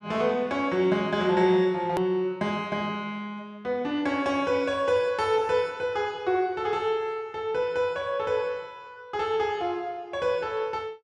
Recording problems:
edit click; at 2 s

